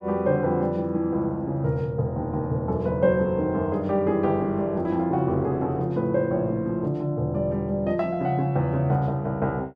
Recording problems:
none

